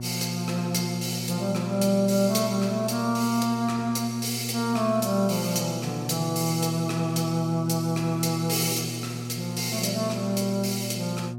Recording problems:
hum; 60 Hz, harmonics up to 720 Hz, SNR 9 dB

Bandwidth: 16 kHz